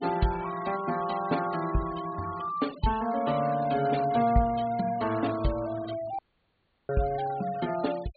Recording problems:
treble missing; nothing above 4.5 kHz
noise reduction artefacts; signal-to-artefact ratio 17 dB
dropout; at 6 s for 0.5 s

